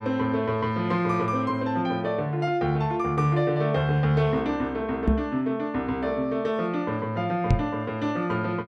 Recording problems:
microphone thump; at 5 s and at 7.5 s; peak +7 dB vs average level

